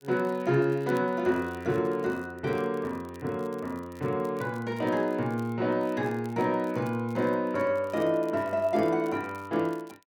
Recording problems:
crackling; vinyl, SNR 28 dB

